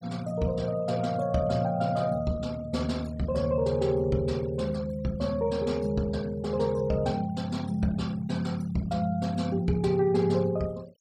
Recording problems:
noise reduction artefacts; signal-to-artefact ratio 24 dB

